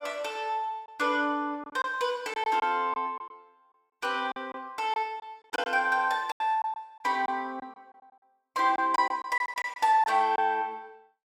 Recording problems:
packet loss; 8% of the sound replaced, filled with silence

